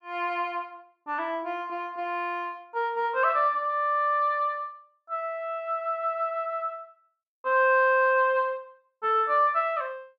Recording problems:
none

